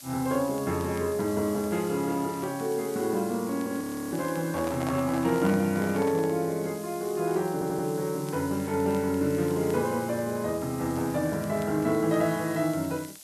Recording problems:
background hiss; SNR 16 dB
crackling; vinyl, SNR 27 dB
audio freezing; at 4 s
handling noise; from 4.5 to 6.5 s; peak -2 dB vs average level
audio stuttering; at 7.5 s

